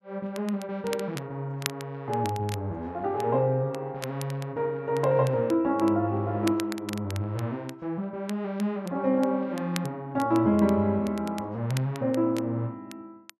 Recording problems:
crackling; vinyl, SNR 16 dB

